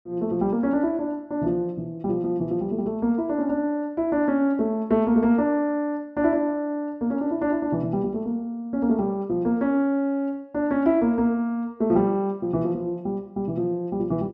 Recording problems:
none

